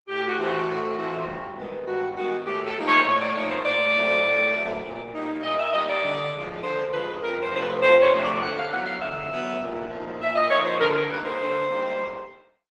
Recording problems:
codec artefacts; Opus, log-spectral distance 4 dB

